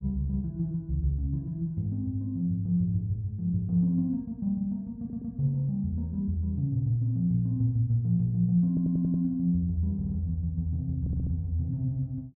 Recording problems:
audio stuttering; 4 times, first at 5 s

